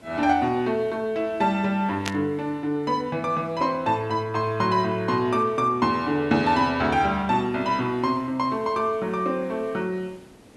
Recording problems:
hiss; slope -6 dB per octave, SNR 27 dB
burst of static; at 2 s; peak 0 dB vs average level

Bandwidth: 12 kHz